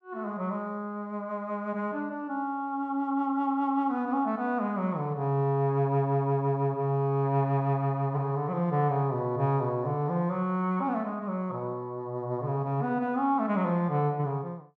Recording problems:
none

